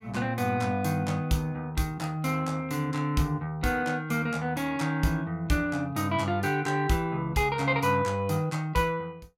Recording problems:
none

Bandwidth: 16 kHz